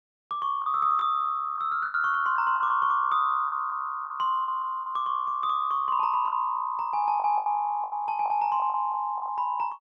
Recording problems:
lost packets; 9% of the sound replaced, filled with the last packet

